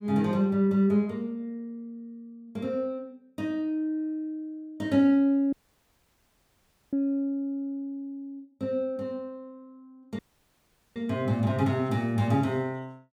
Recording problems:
dropout; at 5.5 s for 1.5 s and at 10 s for 1 s

